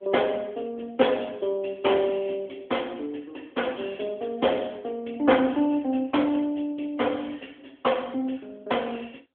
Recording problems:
phone line; 240 Hz to 3.4 kHz, AMR-NB

